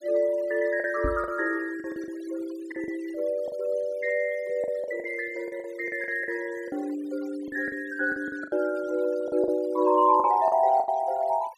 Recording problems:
denoising artefacts; signal-to-artefact ratio 23 dB
packet loss; 10% of the sound replaced, filled with the last packet
microphone thump; at 1 s; peak -1 dB vs average level

